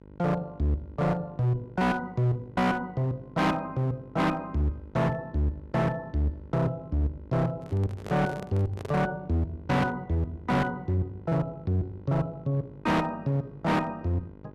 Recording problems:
distorted audio; hard clipping, uneven, signal-to-distortion ratio 7 dB
mains hum; 50 Hz, harmonics up to 1.6 kHz, SNR 21 dB
handling noise; from 7.5 to 9 s; peak -5 dB vs average level

